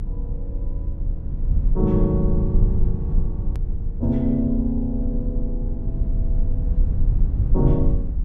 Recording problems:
low-frequency rumble; below 66 Hz, strongest tone 30 Hz, SNR 0 dB
click at an edit; at 3.5 s

